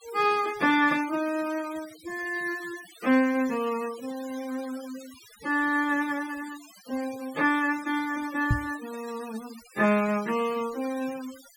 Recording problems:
denoising artefacts; signal-to-artefact ratio 17 dB
microphone thump; at 8.5 s; peak +6 dB vs average level

